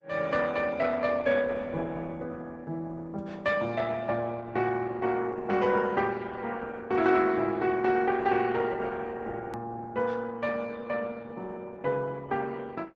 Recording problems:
lossy compression; Opus, log-spectral distance 3 dB
click at an edit; at 9.5 s

